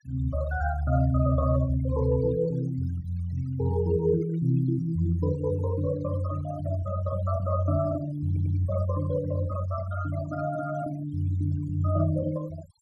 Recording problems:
noise reduction artefacts; signal-to-artefact ratio 20 dB
audio stuttering; at 8.5 s

